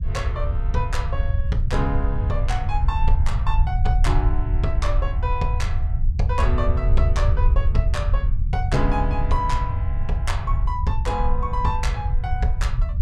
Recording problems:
low-frequency rumble; below 74 Hz, SNR -4 dB

